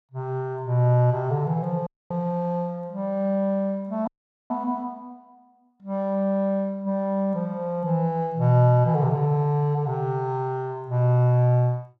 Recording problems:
dropout; at 2 s and at 4 s

